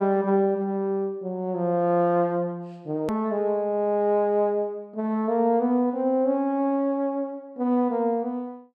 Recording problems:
hard cut with a click; at 3 s

